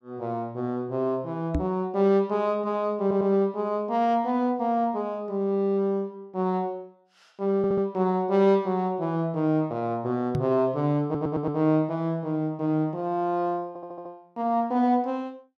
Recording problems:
microphone bump; at 1.5 s and at 10 s; peak +2 dB vs average level
audio stuttering; 4 times, first at 3 s

